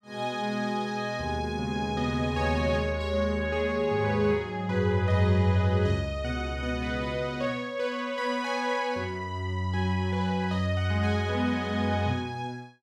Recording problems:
none

